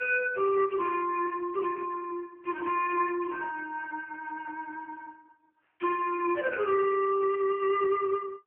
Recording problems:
telephone audio; 320 Hz to 2.9 kHz, AMR-NB

